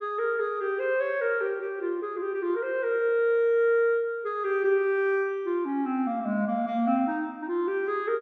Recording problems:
none

